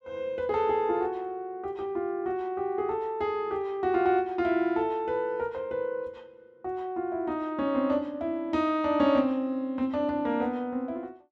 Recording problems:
none

